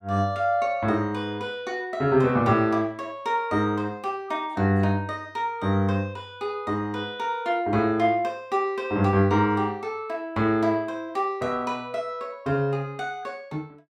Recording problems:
none

